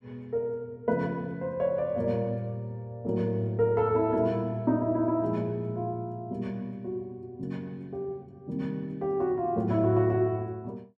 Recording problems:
none

